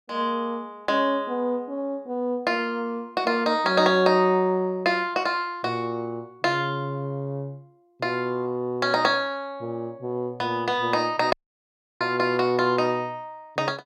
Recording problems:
dropout; at 11 s for 0.5 s

